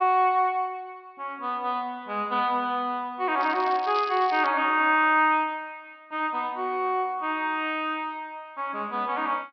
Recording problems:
treble missing; nothing above 5.5 kHz
crackle; from 3.5 to 4.5 s; loose cable, SNR 18 dB

